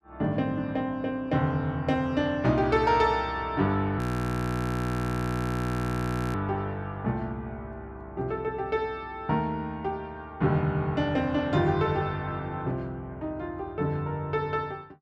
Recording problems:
frozen audio; at 4 s for 2.5 s

